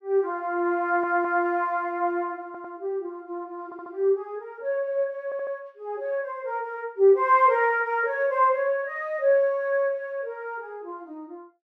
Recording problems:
stutter; 4 times, first at 1 s

